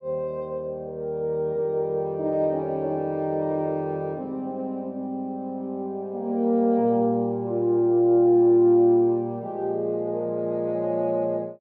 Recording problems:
none

